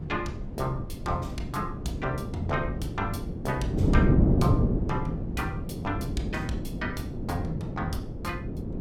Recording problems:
rumble; below 110 Hz, SNR 12 dB
wind on the microphone; below 270 Hz, SNR -3 dB

